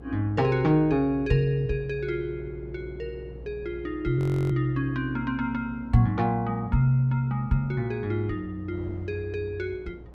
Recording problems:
electrical hum; 60 Hz, harmonics up to 540 Hz, SNR 18 dB
wind on the microphone; below 460 Hz, SNR 23 dB
audio freezing; at 4 s

